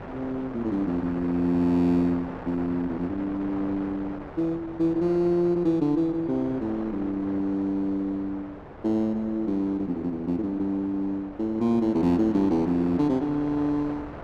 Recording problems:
wind noise; below 960 Hz, SNR 15 dB

